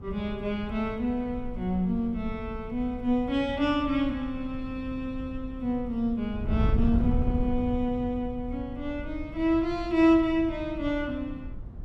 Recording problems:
wind on the microphone; below 110 Hz, SNR 8 dB

